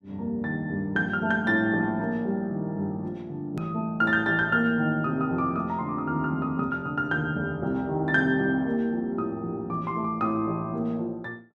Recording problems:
edit click; at 3.5 s

